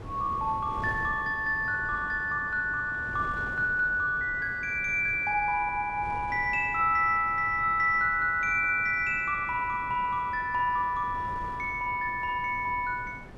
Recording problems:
wind on the microphone; below 480 Hz, SNR 17 dB

